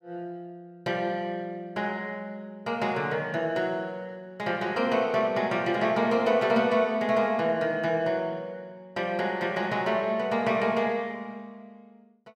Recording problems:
none

